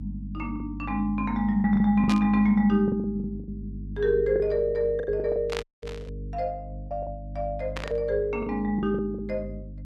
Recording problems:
electrical hum; 50 Hz, harmonics up to 300 Hz, SNR 13 dB
lost packets; 10% of the sound replaced, filled with the last packet
burst of static; at 2 s, at 5.5 s and at 8 s; peak -3 dB vs average level
audio cutting out; at 5.5 s

